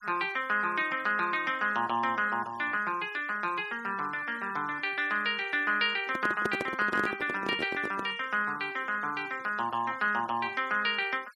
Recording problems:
noise reduction artefacts; signal-to-artefact ratio 22 dB
handling noise; from 6 to 8 s; peak +2 dB vs average level

